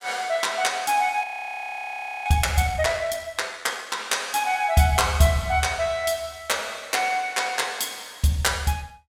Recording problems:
frozen audio; at 1 s for 1 s

